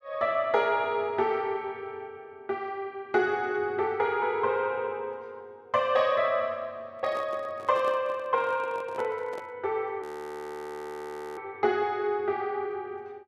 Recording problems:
microphone handling noise; from 7 to 9.5 s; peak -7 dB vs average level
audio freezing; at 10 s for 1.5 s

